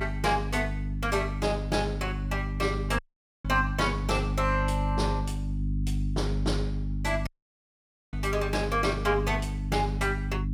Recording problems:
hum; 50 Hz, harmonics up to 300 Hz, SNR 2 dB
audio cutting out; at 3 s and at 7.5 s for 1 s

